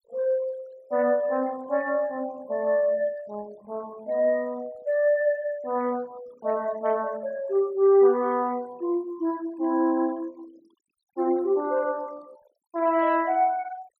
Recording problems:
denoising artefacts; signal-to-artefact ratio 25 dB

